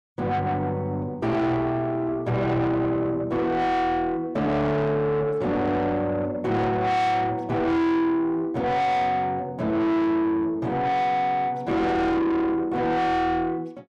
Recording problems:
distorted audio; soft clipping, signal-to-distortion ratio 8 dB

